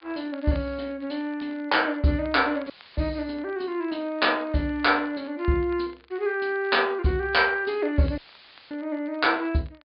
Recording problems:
treble cut off; nothing above 4.9 kHz
crackling; vinyl, SNR 29 dB
audio cutting out; at 2.5 s and at 8 s for 0.5 s; filled with static

